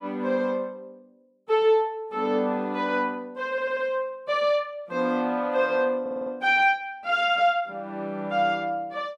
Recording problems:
audio stuttering; at 3.5 s and at 6 s

